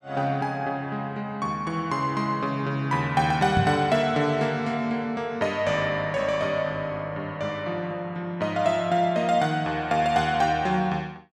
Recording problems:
knock on the microphone; at 3.5 s; peak +4 dB vs average level

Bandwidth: 12.5 kHz